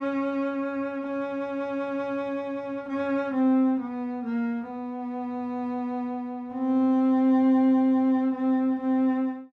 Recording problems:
none

